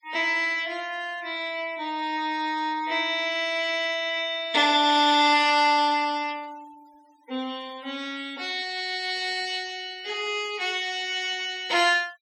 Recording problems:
denoising artefacts; signal-to-artefact ratio 24 dB

